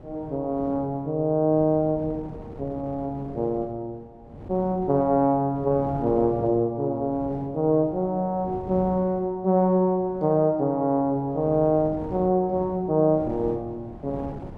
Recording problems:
wind noise; below 390 Hz, SNR 17 dB

